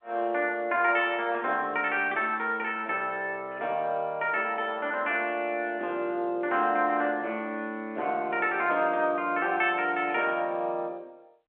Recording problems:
telephone audio; 260 Hz to 3.5 kHz, G.711

